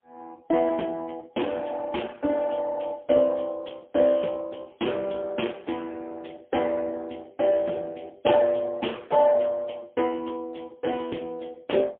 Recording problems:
telephone audio; 220 Hz to 3.4 kHz, AMR-NB, then MP3

